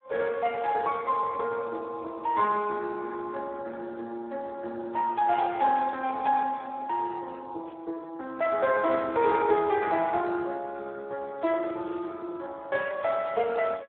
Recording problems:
phone line; 280 Hz to 2.8 kHz, Speex

